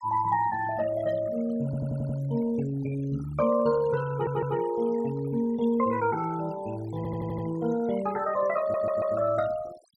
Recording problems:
denoising artefacts; signal-to-artefact ratio 17 dB
stutter; 4 times, first at 1.5 s

